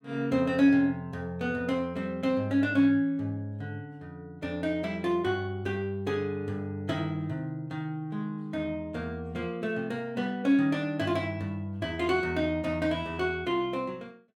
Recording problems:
none

